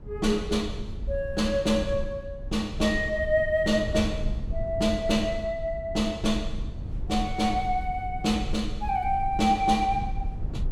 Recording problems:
rumble; below 84 Hz, SNR 9 dB

